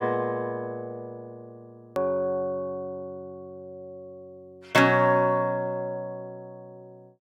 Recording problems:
hard cut with a click; at 2 s

